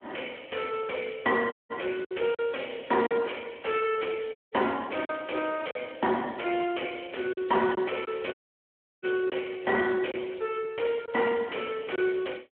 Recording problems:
phone line; 190 Hz to 3 kHz, Speex
distorted audio; soft clipping, signal-to-distortion ratio 7 dB
lost packets; 3% of the sound replaced, filled with silence
audio cutting out; at 1.5 s, at 4.5 s and at 8.5 s for 0.5 s

